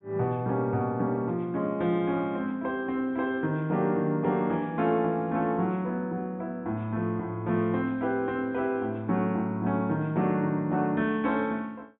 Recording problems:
treble missing; nothing above 3.9 kHz

